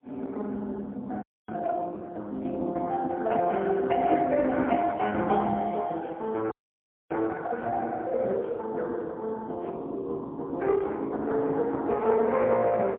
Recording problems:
telephone audio; 260 Hz to 3.8 kHz, AMR-NB, then MP3
audio freezing; at 1 s and at 6.5 s for 0.5 s

